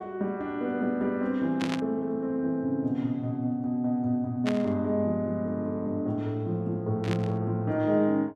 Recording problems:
burst of static; at 1.5 s, at 4.5 s and at 7 s; peak -1 dB vs average level

